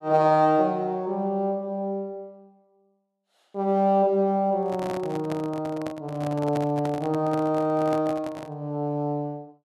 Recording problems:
handling noise; from 4.5 to 8.5 s; peak -4 dB vs average level

